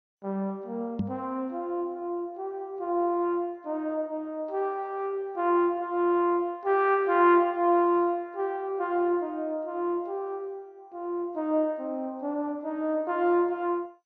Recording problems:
lossy codec; MP2, log-spectral distance 2 dB
microphone thump; at 1 s; peak +3 dB vs average level

